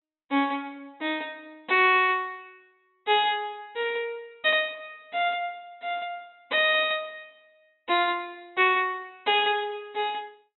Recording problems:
treble cut off; nothing above 4 kHz

